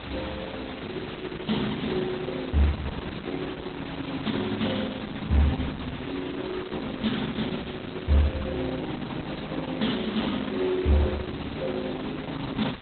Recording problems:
lossy compression; Opus, log-spectral distance 13 dB, nothing above 4 kHz
distortion; soft clipping, signal-to-distortion ratio 4 dB
hum; 60 Hz, harmonics up to 360 Hz, SNR 24 dB
hiss; SNR 9 dB
wind noise; below 610 Hz, SNR 22 dB

